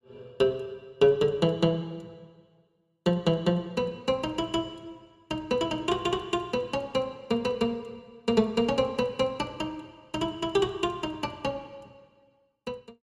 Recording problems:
none

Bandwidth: 14 kHz